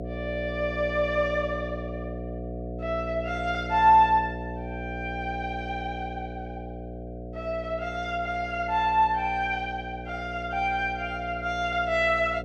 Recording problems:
hum; 60 Hz, harmonics up to 720 Hz, SNR 10 dB

